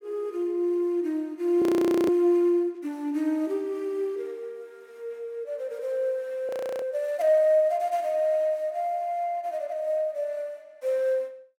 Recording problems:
frozen audio; at 1.5 s and at 6.5 s

